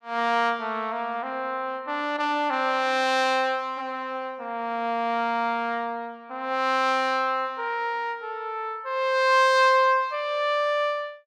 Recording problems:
none

